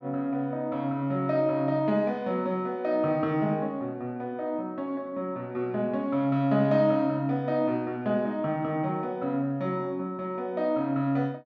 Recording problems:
none

